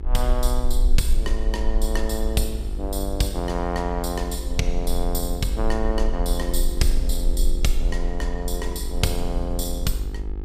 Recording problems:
electrical hum; 50 Hz, harmonics up to 1.8 kHz, SNR 13 dB
rumble; below 50 Hz, strongest tone 20 Hz, SNR 0 dB

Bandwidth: 15.5 kHz